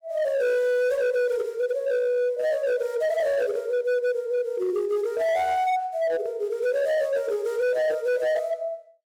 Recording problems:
distorted audio; hard clipping, signal-to-distortion ratio 11 dB

